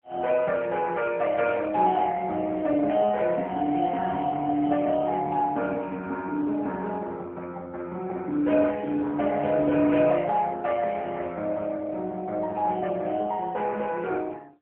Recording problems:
telephone audio; 190 Hz to 3.6 kHz, AMR-NB

